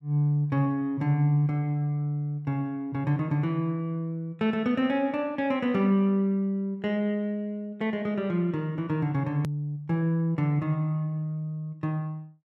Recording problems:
click at an edit; at 9.5 s

